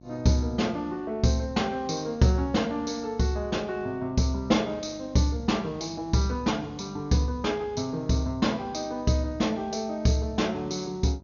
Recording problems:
treble missing; nothing above 6.7 kHz
hum; 50 Hz, harmonics up to 1 kHz, SNR 24 dB

